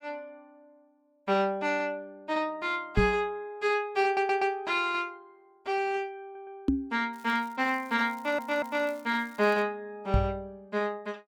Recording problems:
microphone bump; at 3 s, at 6.5 s and at 10 s; peak +8 dB vs average level
audio stuttering; at 4 s, at 6 s and at 8 s
crackle; from 7 to 9.5 s; loose cable, SNR 26 dB

